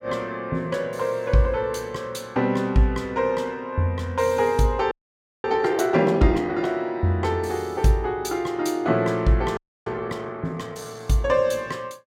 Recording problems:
audio freezing; at 5 s for 0.5 s and at 9.5 s

